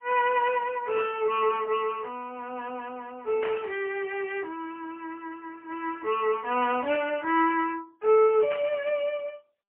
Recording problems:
phone line; 300 Hz to 3.1 kHz, AMR-NB, then MP3
burst of static; at 3.5 s, at 7 s and at 8.5 s; peak -5 dB vs average level

